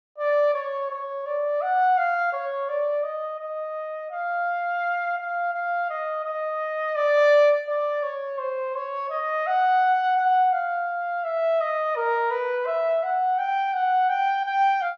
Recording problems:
none

